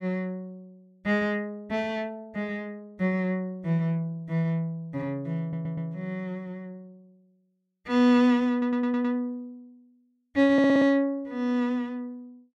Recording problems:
audio stuttering; at 5.5 s, at 8.5 s and at 11 s

